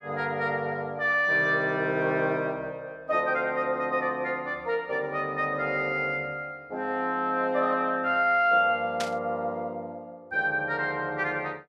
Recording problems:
burst of static; at 9 s; peak -2 dB vs average level

